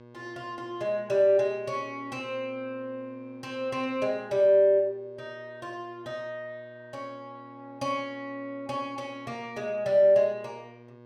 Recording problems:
hum; 60 Hz, harmonics up to 1.7 kHz, SNR 24 dB

